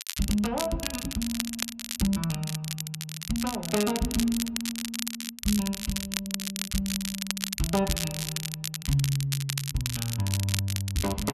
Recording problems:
crackling; vinyl, SNR 2 dB

